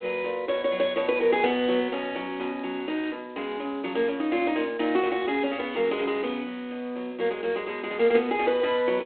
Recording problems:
telephone audio; 260 Hz to 3.7 kHz, G.726

